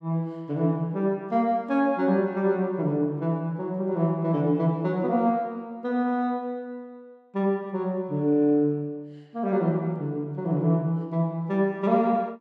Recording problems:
none

